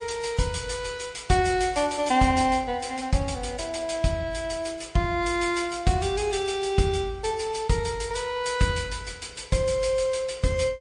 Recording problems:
lossy compression; MP3, log-spectral distance 4 dB, nothing above 9 kHz

